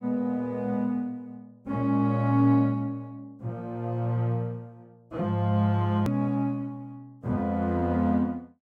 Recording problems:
edit click; at 6 s

